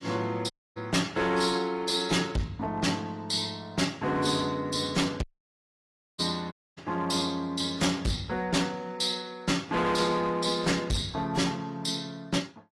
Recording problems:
lossy codec; AAC, log-spectral distance 4 dB, nothing above 11.3 kHz
distortion; hard clipping, signal-to-distortion ratio 6 dB
audio cutting out; at 0.5 s, at 5 s for 1 s and at 6.5 s

